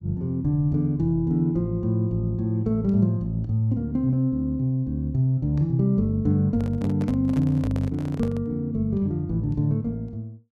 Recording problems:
microphone handling noise; from 6.5 to 8.5 s; peak -9 dB vs average level

